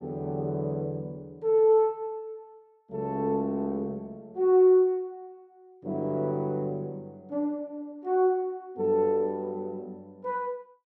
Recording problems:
none

